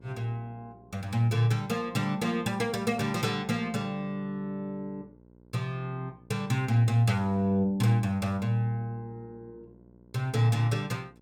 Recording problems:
hum; 60 Hz, harmonics up to 960 Hz, SNR 27 dB

